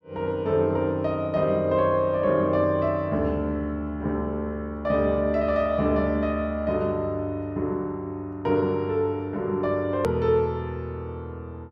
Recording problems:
edit click; at 10 s

